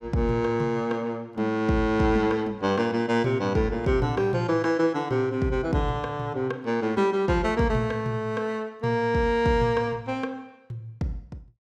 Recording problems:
none

